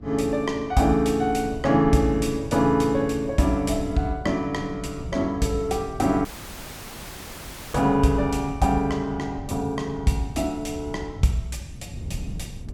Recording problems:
wind noise; below 160 Hz, SNR 13 dB
dropout; at 6.5 s for 1.5 s

